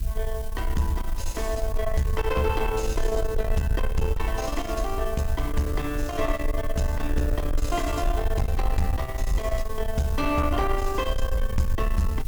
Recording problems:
distorted audio; soft clipping, signal-to-distortion ratio 13 dB
hiss; slope +1 dB per octave, SNR 16 dB
wind on the microphone; below 58 Hz, SNR 3 dB

